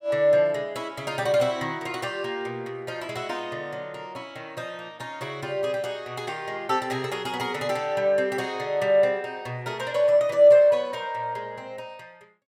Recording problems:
none

